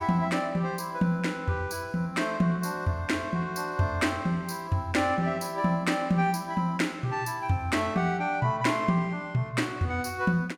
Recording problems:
none

